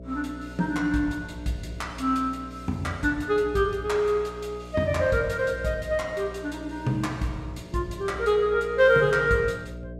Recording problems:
electrical hum; 60 Hz, harmonics up to 660 Hz, SNR 16 dB

